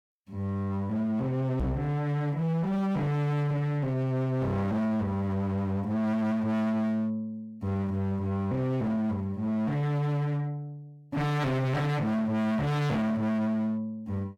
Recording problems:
distorted audio; hard clipping, signal-to-distortion ratio 6 dB
knock on the microphone; at 1.5 s; peak +4 dB vs average level

